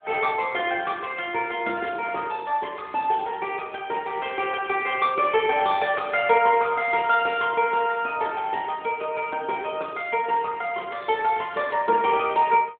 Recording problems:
telephone audio; 300 Hz to 3.5 kHz, AMR-NB

